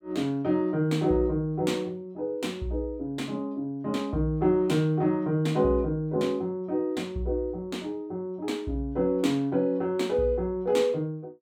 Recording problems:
none

